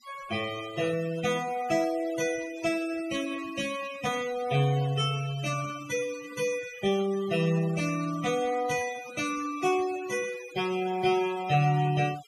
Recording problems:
noise reduction artefacts; signal-to-artefact ratio 14 dB

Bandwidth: 15 kHz